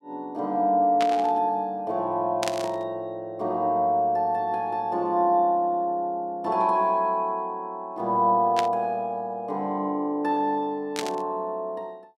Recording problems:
burst of static; 4 times, first at 1 s; peak -1 dB vs average level

